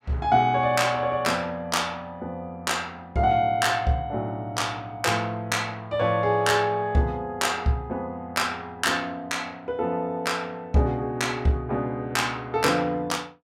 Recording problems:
none

